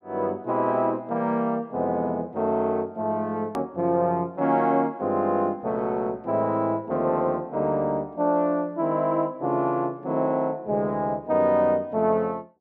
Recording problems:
edit click; at 3.5 s

